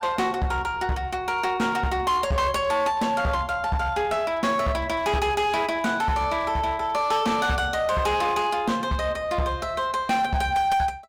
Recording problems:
distorted audio; hard clipping, uneven, signal-to-distortion ratio 11 dB

